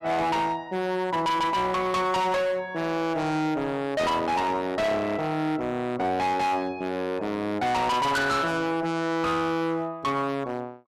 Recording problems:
distorted audio; hard clipping, signal-to-distortion ratio 6 dB

